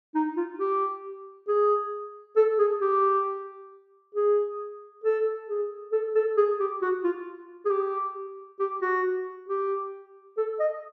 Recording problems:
none

